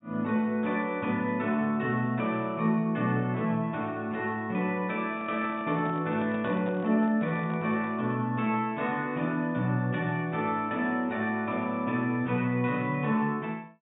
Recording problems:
treble missing; nothing above 4 kHz
microphone handling noise; from 5 to 8 s; peak -6 dB vs average level

